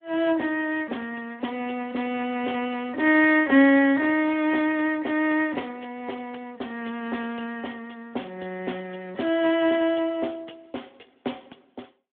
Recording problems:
telephone audio; 190 Hz to 3.4 kHz, Speex

